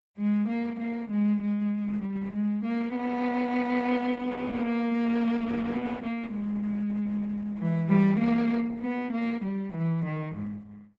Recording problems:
codec artefacts; Opus, log-spectral distance 3 dB, nothing above 7.6 kHz

